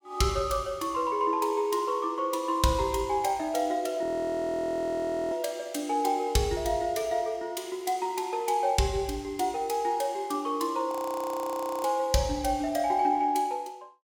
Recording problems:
audio freezing; at 4 s for 1.5 s and at 11 s for 1 s

